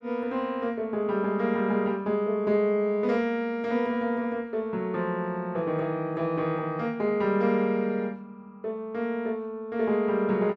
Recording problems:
none

